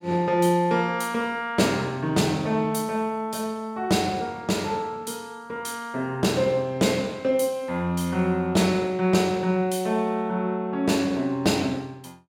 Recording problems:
none

